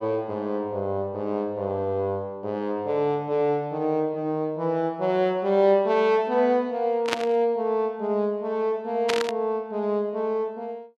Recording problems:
static burst; at 7 s and at 9 s; peak +3 dB vs average level

